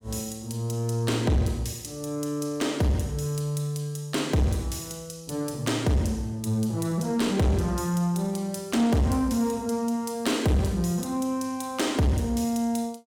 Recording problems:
distorted audio; soft clipping, signal-to-distortion ratio 10 dB

